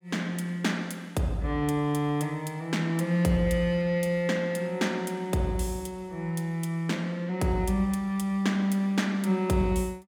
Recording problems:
none

